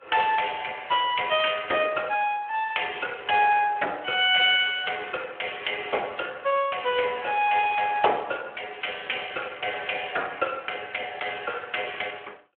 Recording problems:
phone line; 340 Hz to 3.4 kHz, Speex

